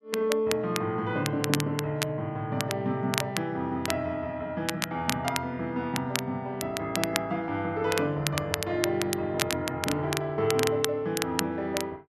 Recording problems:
crackle; vinyl, SNR 4 dB

